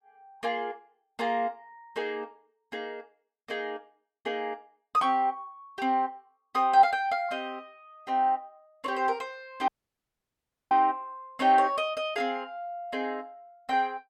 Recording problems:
dropout; at 9.5 s for 1 s

